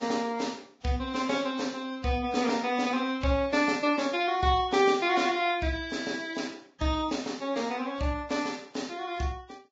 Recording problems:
codec artefacts; Vorbis, log-spectral distance 4 dB, nothing above 7.6 kHz

